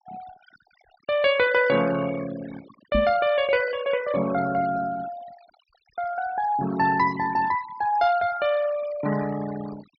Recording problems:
treble missing; nothing above 5.5 kHz
noise reduction artefacts; signal-to-artefact ratio 15 dB
microphone bump; at 3 s; peak +1 dB vs average level

